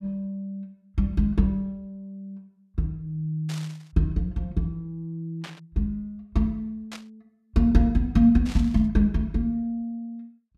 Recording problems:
burst of static; 4 times, first at 3.5 s; peak -9 dB vs average level

